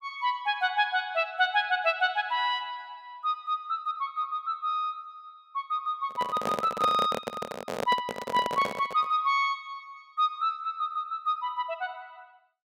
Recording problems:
microphone handling noise; from 6 to 9 s; peak +2 dB vs average level

